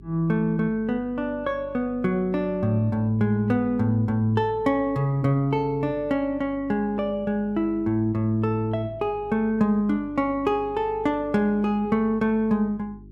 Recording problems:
hum; 50 Hz, harmonics up to 400 Hz, SNR 22 dB

